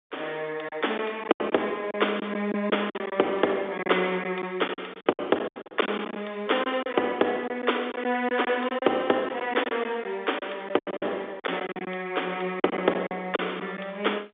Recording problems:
phone line; 280 Hz to 3.6 kHz, G.711
lost packets; 12% of the sound replaced, filled with silence

